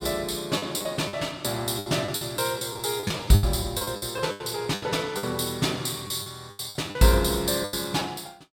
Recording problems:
packet loss; 14% of the sound replaced, filled with the last packet

